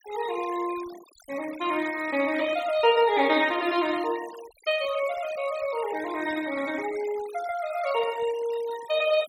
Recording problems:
noise reduction artefacts; signal-to-artefact ratio 16 dB

